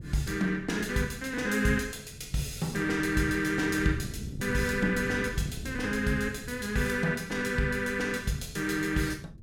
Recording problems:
wind on the microphone; below 180 Hz, SNR 14 dB

